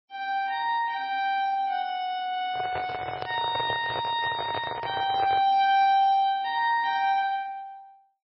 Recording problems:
lossy compression; MP3, log-spectral distance 2 dB, nothing above 5.2 kHz
microphone handling noise; from 2.5 to 5.5 s; peak -4 dB vs average level

